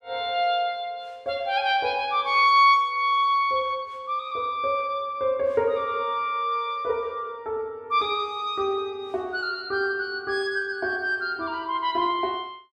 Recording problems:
none

